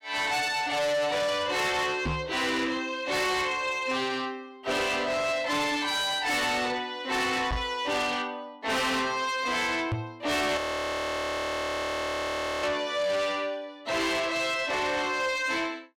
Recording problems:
distorted audio; soft clipping, signal-to-distortion ratio 7 dB
microphone bump; at 2 s, at 7.5 s and at 10 s; peak +1 dB vs average level
audio freezing; at 11 s for 2 s

